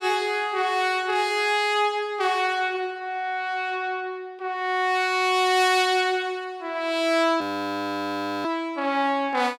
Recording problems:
audio freezing; at 7.5 s for 1 s

